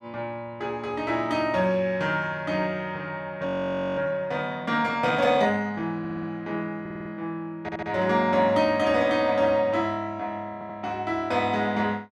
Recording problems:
frozen audio; at 3.5 s for 0.5 s
audio stuttering; 4 times, first at 6 s

